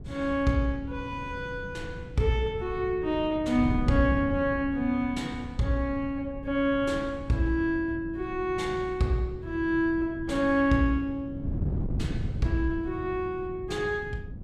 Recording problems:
wind noise; below 160 Hz, SNR 10 dB

